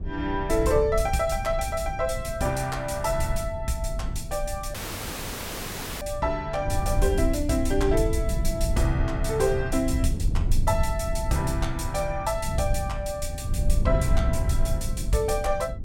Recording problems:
rumble; below 88 Hz, SNR 2 dB
audio cutting out; at 4.5 s for 1.5 s

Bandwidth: 16.5 kHz